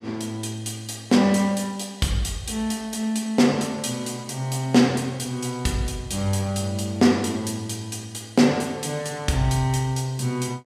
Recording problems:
none

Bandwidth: 15.5 kHz